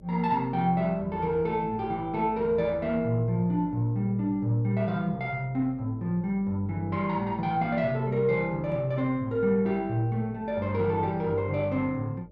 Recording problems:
hum; 50 Hz, harmonics up to 600 Hz, SNR 23 dB

